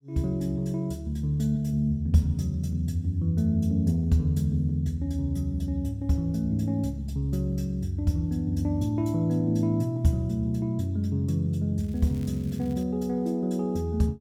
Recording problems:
crackle; from 12 to 13 s; loose cable, SNR 28 dB

